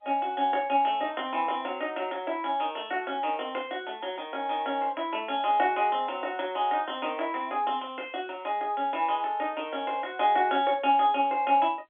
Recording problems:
telephone audio; 220 Hz to 3.6 kHz, G.711

